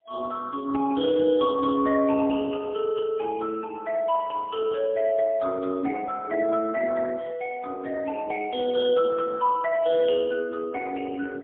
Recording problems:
telephone audio; 240 Hz to 2.6 kHz, AMR-NB, then MP3

